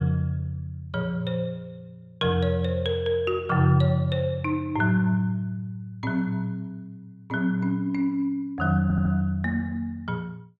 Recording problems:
stutter; at 9 s

